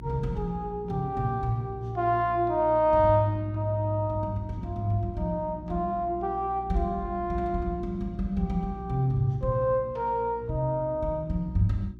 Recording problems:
mains hum; 60 Hz, harmonics up to 360 Hz, SNR 16 dB

